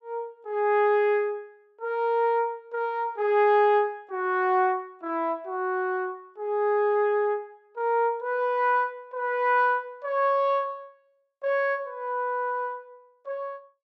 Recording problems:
none

